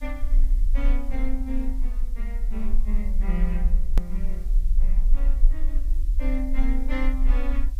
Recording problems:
background hiss; slope +2 dB per octave, SNR 23 dB
rumble; below 36 Hz, strongest tone 28 Hz, SNR -8 dB
click at an edit; at 4 s

